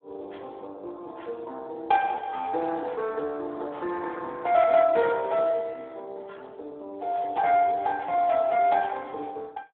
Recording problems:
phone line; 300 Hz to 4 kHz, Speex

